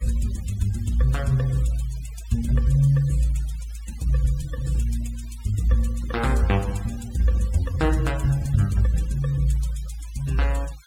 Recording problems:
noise reduction artefacts; signal-to-artefact ratio 21 dB

